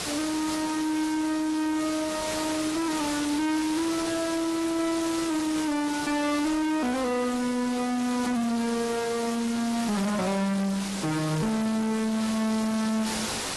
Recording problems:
lossy compression; AAC, log-spectral distance 7 dB, nothing above 11.6 kHz
distorted audio; soft clipping, signal-to-distortion ratio 6 dB
background hiss; slope -2 dB per octave, SNR 5 dB

